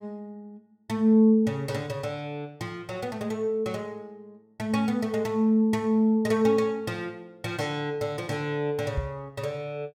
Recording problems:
microphone bump; at 9 s; peak 0 dB vs average level

